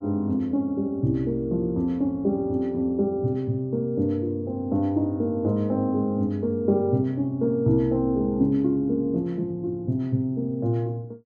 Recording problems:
none

